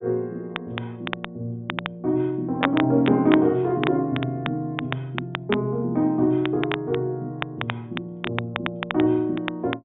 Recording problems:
low-pass filter; nothing above 3.6 kHz
crackle; vinyl, SNR 9 dB

